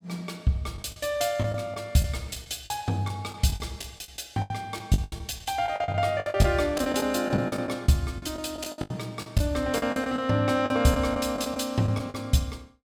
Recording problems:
packet loss; 14% of the sound replaced, filled with the last packet

